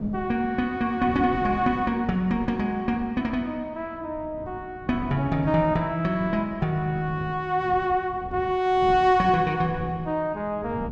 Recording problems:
wind noise; below 240 Hz, SNR 16 dB

